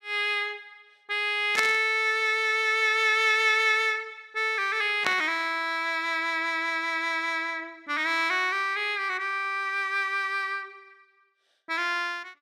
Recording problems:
static burst; at 1.5 s and at 5 s; peak +1 dB vs average level

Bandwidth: 14.5 kHz